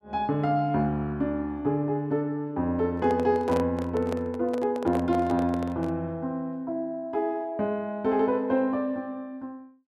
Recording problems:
handling noise; from 3 to 6 s; peak -1 dB vs average level

